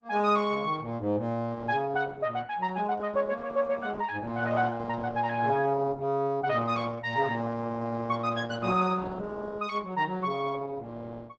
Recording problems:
codec artefacts; Opus, log-spectral distance 3 dB, nothing above 7.6 kHz

